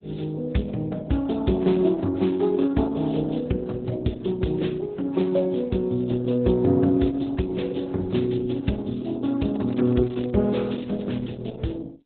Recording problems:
codec artefacts; AAC, then Opus, log-spectral distance 4 dB, nothing above 3.9 kHz
crackle; at 9.5 s and at 11 s; loose cable, SNR 27 dB

